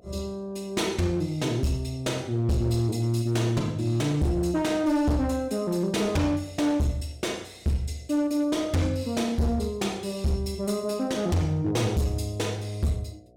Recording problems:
distorted audio; hard clipping, signal-to-distortion ratio 10 dB
hum; 60 Hz, harmonics up to 720 Hz, SNR 30 dB

